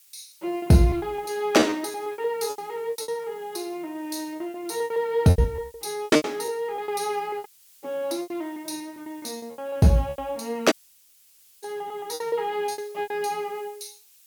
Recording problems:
hiss; SNR 26 dB
lost packets; 15% of the sound replaced, filled with repeated pitch periods
audio cutting out; at 7.5 s and at 11 s for 1 s

